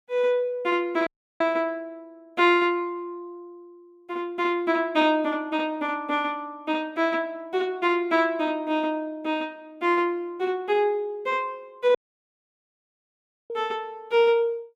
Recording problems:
dropout; at 1 s and at 12 s for 1.5 s

